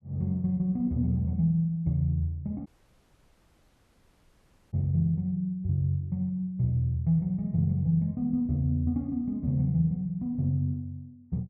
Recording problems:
audio cutting out; at 2.5 s for 2 s

